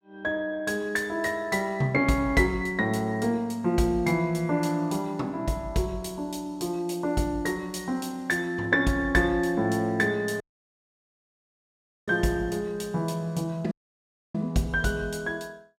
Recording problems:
dropout; at 10 s for 1.5 s and at 14 s for 0.5 s

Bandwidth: 16.5 kHz